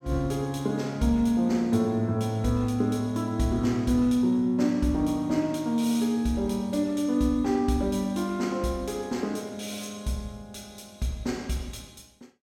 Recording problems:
none

